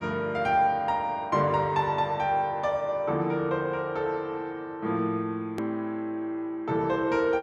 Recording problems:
edit click; at 5.5 s

